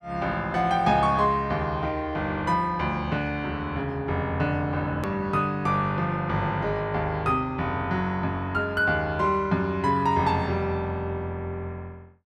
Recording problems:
edit click; at 5 s

